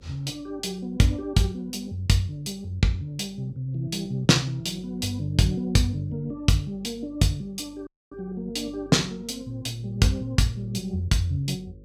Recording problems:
hum; 50 Hz, harmonics up to 550 Hz, SNR 25 dB
dropout; at 8 s

